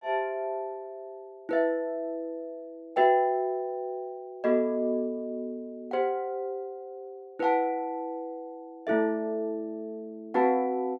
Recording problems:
none

